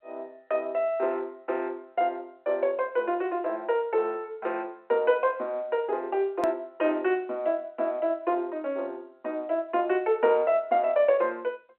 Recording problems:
telephone audio; 320 Hz to 3.2 kHz, G.711
hard cut with a click; at 6.5 s

